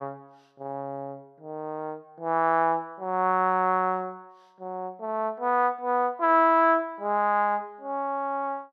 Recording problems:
none

